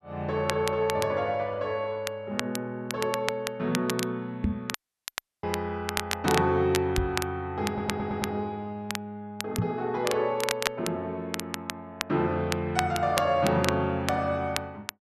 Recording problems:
crackle; vinyl, SNR 7 dB
knock on the microphone; at 4.5 s, at 7 s and at 9.5 s; peak +6 dB vs average level
audio cutting out; at 4.5 s for 0.5 s
stutter; at 7.5 s

